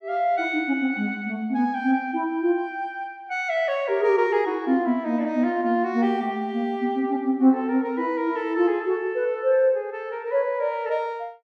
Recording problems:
none

